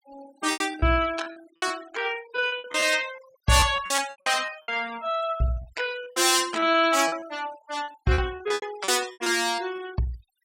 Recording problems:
denoising artefacts; signal-to-artefact ratio 18 dB
packet loss; 15% of the sound replaced, filled with repeated pitch periods

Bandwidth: 16.5 kHz